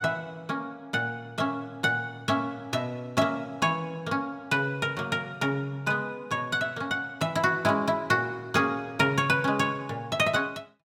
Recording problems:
none

